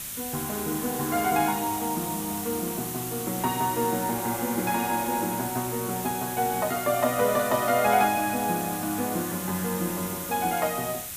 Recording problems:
hiss; slope +1 dB per octave, SNR 6 dB

